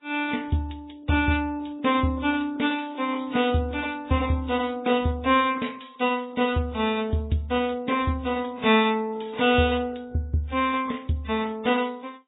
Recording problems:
lossy codec; AAC, then MP3, log-spectral distance 5 dB, nothing above 3.7 kHz

